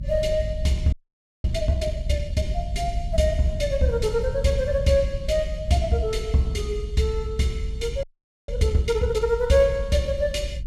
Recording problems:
low-frequency rumble; below 72 Hz, SNR 7 dB
audio freezing; at 1 s for 0.5 s and at 8 s

